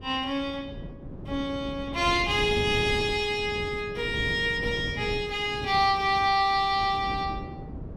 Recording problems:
wind noise; below 290 Hz, SNR 12 dB

